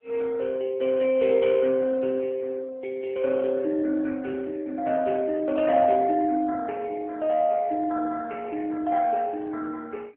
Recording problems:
phone line; 260 Hz to 3.3 kHz, AMR-NB

